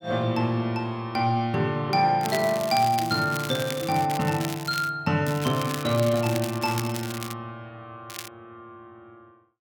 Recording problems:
crackle; from 2 to 5 s, from 5.5 to 7.5 s and at 8 s; loose cable, SNR 12 dB

